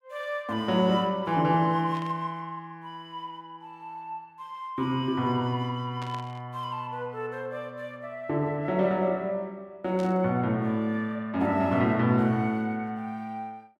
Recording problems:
static burst; at 2 s, at 6 s and at 10 s; peak -11 dB vs average level

